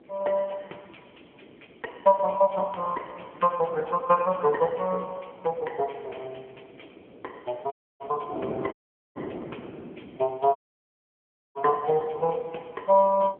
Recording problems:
phone line; 240 Hz to 2.9 kHz, AMR-NB
wind noise; below 520 Hz, SNR 18 dB
dropout; at 7.5 s, at 8.5 s and at 11 s for 1 s

